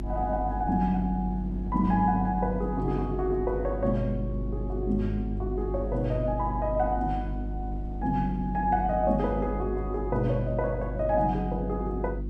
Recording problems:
electrical hum; 50 Hz, harmonics up to 350 Hz, SNR 6 dB
wind on the microphone; below 260 Hz, SNR 19 dB

